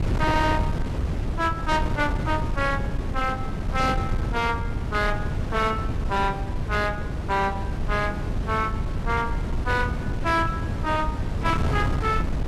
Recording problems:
distortion; hard clipping, signal-to-distortion ratio 12 dB
wind noise; below 190 Hz, SNR 2 dB

